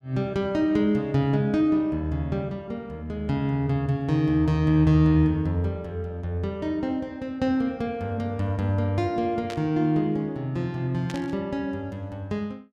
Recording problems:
static burst; at 9.5 s and at 11 s; peak -8 dB vs average level

